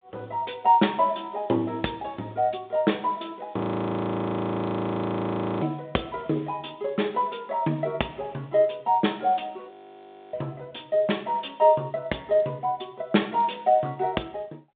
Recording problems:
phone line; 190 Hz to 3.6 kHz, G.726
audio freezing; at 3.5 s for 2 s and at 9.5 s for 0.5 s

